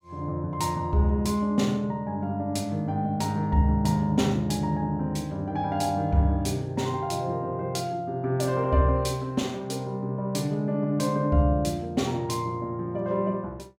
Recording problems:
none

